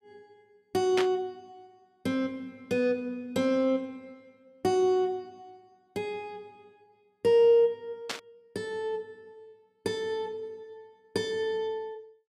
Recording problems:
static burst; at 1 s and at 8 s; peak +1 dB vs average level

